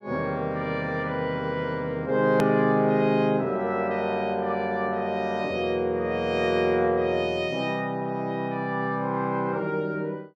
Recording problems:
click at an edit; at 2.5 s

